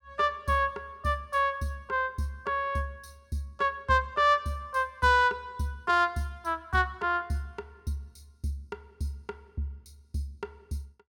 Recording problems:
none

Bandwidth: 17.5 kHz